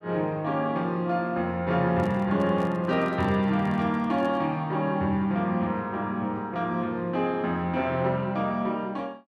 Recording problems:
microphone handling noise; from 2 to 4.5 s; peak -11 dB vs average level

